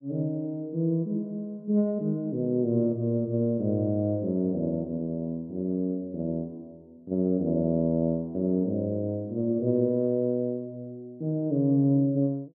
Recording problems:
none

